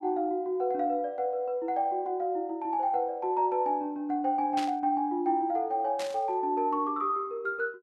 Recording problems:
static burst; at 4.5 s and at 6 s; peak -4 dB vs average level

